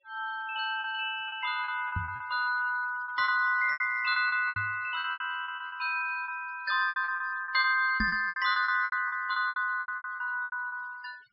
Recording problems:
low-pass filter; nothing above 5.2 kHz
denoising artefacts; signal-to-artefact ratio 25 dB
packet loss; 17% of the sound replaced, filled with repeated pitch periods
microphone thump; at 2 s, at 4.5 s and at 8 s; peak 0 dB vs average level

